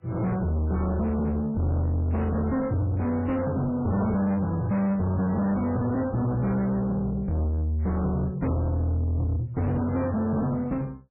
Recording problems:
lossy compression; MP3, log-spectral distance 2 dB, nothing above 2.5 kHz
distortion; soft clipping, signal-to-distortion ratio 8 dB

